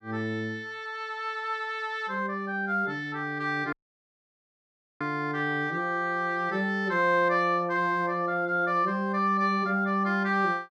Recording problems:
audio cutting out; at 3.5 s for 1.5 s

